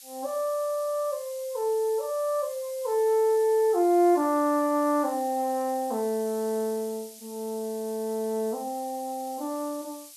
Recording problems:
hiss; slope +7 dB per octave, SNR 17 dB

